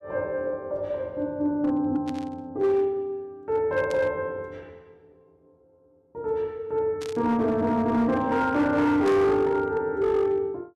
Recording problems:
distortion; hard clipping, signal-to-distortion ratio 12 dB
static burst; 4 times, first at 2 s; peak -11 dB vs average level

